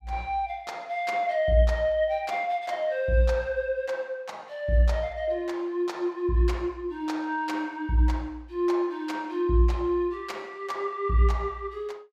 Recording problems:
none

